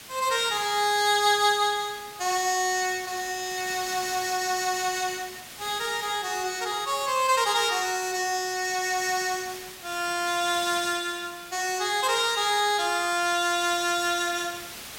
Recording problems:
hiss; slope 0 dB per octave, SNR 15 dB

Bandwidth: 16.5 kHz